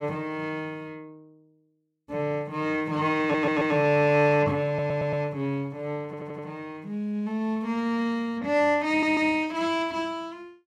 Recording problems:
audio stuttering; 4 times, first at 3 s

